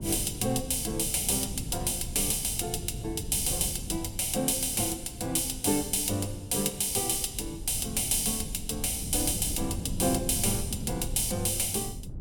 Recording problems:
wind noise; below 170 Hz, SNR 12 dB

